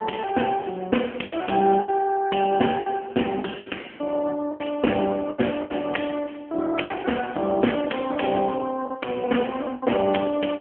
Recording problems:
phone line; 190 Hz to 3.2 kHz, AMR-NB
lost packets; 8% of the sound replaced, filled with the last packet

